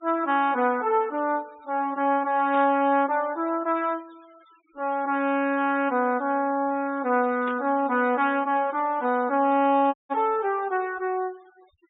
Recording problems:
treble missing; nothing above 4 kHz
noise reduction artefacts; signal-to-artefact ratio 27 dB
static burst; at 2.5 s, at 7.5 s and at 10 s; peak -13 dB vs average level
dropout; at 10 s

